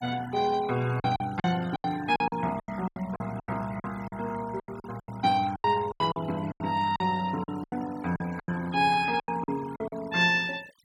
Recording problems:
noise reduction artefacts; signal-to-artefact ratio 19 dB
lost packets; 15% of the sound replaced, filled with silence

